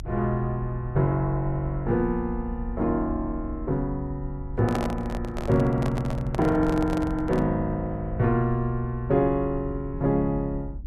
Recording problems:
low-frequency rumble; below 64 Hz, SNR 11 dB
handling noise; from 4.5 to 7.5 s; peak 0 dB vs average level

